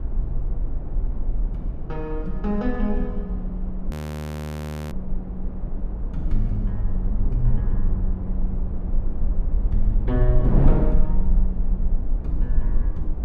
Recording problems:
low-frequency rumble; below 44 Hz, strongest tone 22 Hz, SNR -4 dB
wind noise; below 340 Hz, SNR 3 dB
frozen audio; at 4 s for 1 s

